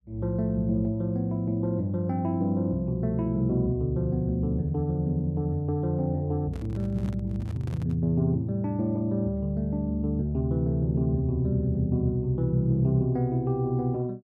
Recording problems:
handling noise; from 6.5 to 8 s; peak -8 dB vs average level

